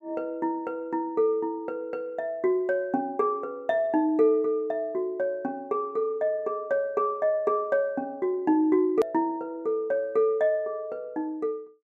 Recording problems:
click at an edit; at 9 s

